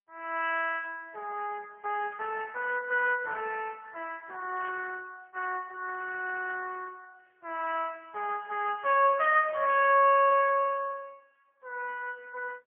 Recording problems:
phone line; 370 Hz to 3.1 kHz, AMR-NB, then MP3
burst of static; at 4.5 s; peak -14 dB vs average level

